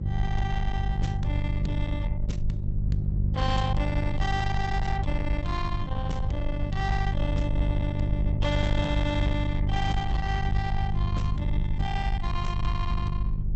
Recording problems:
treble cut off; nothing above 8 kHz
distorted audio; soft clipping, signal-to-distortion ratio 11 dB
mains hum; 50 Hz, harmonics up to 400 Hz, SNR -1 dB
low-frequency rumble; below 76 Hz, SNR 1 dB

